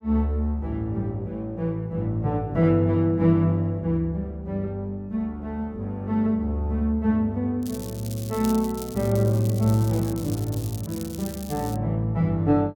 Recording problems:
crackling; from 7.5 to 12 s; loose cable, SNR 16 dB

